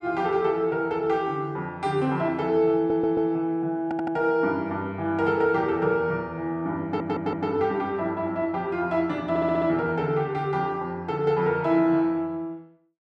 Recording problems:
stutter; 4 times, first at 3 s

